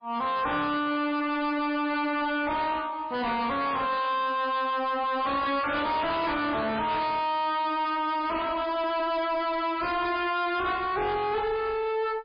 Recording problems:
lossy codec; MP3, then MP3, log-spectral distance 3 dB, nothing above 4.4 kHz
distortion; soft clipping, signal-to-distortion ratio 5 dB

